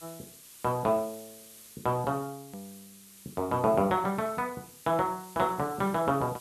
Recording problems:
background hiss; SNR 19 dB
hard cut with a click; at 2.5 s

